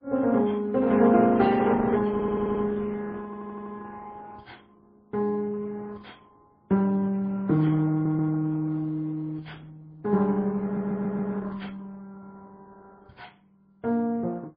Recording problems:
codec artefacts; Opus, then MP3, log-spectral distance 3 dB, nothing above 10.7 kHz
audio stuttering; 4 times, first at 2 s

